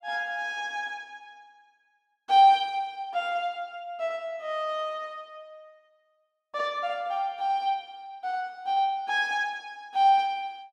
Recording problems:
none

